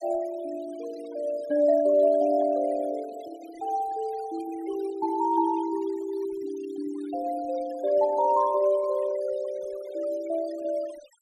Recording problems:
noise reduction artefacts; signal-to-artefact ratio 20 dB

